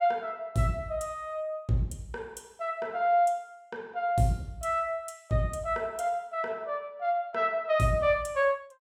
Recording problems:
none

